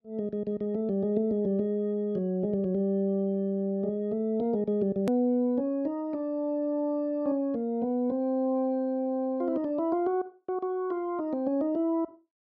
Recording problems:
hard cut with a click; at 5 s

